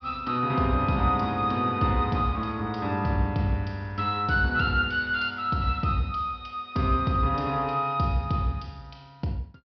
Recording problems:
treble cut off; nothing above 5.5 kHz

